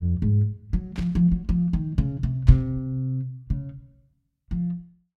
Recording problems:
static burst; at 1 s and at 2.5 s; peak -13 dB vs average level

